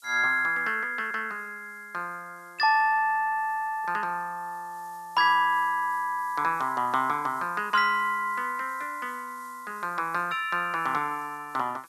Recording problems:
background hiss; SNR 27 dB

